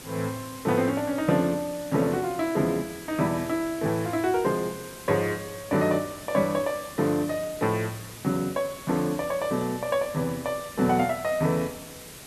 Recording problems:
background hiss; slope -2 dB per octave, SNR 15 dB

